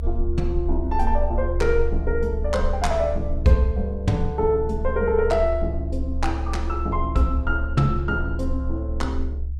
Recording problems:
low-frequency rumble; below 70 Hz, SNR 4 dB

